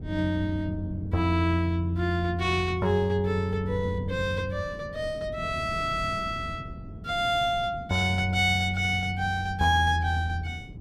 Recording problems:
wind on the microphone; below 200 Hz, SNR 14 dB

